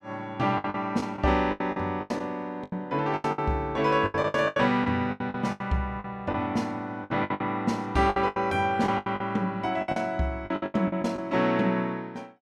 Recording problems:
packet loss; 16% of the sound replaced, filled with the last packet

